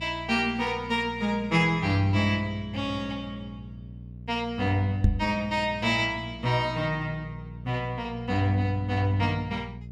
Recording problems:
mains hum; 60 Hz, harmonics up to 480 Hz, SNR 15 dB
knock on the microphone; at 5 s; peak +8 dB vs average level

